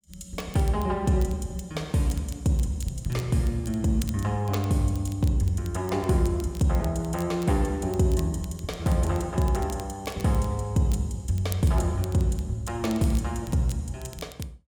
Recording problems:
crackling; vinyl, SNR 21 dB

